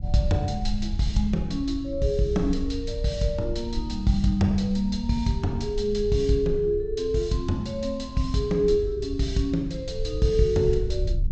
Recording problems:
low-pass filter; nothing above 8 kHz
rumble; below 70 Hz, SNR 9 dB

